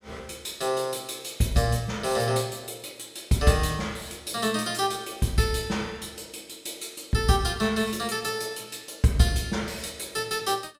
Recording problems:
none

